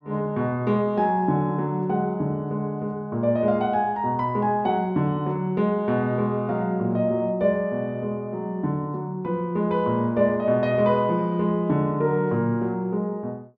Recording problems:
none

